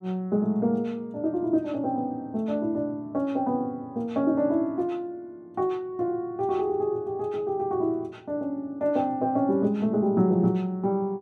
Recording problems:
none

